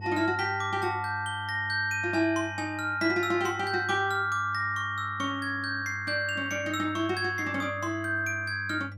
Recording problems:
hum; 50 Hz, harmonics up to 500 Hz, SNR 15 dB

